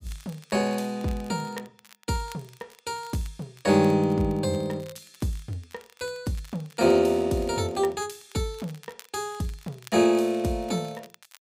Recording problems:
crackle; vinyl, SNR 25 dB

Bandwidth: 15.5 kHz